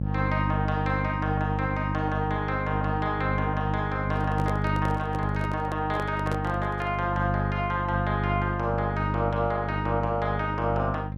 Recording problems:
hum; 50 Hz, harmonics up to 550 Hz, SNR 1 dB
handling noise; from 4 to 7 s; peak -1 dB vs average level

